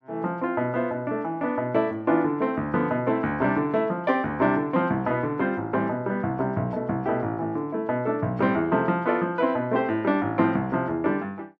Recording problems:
none

